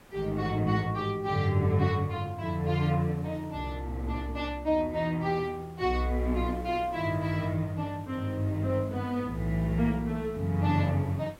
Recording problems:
background hiss; slope -5 dB per octave, SNR 24 dB

